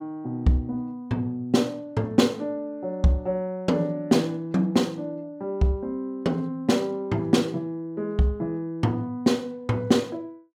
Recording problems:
none

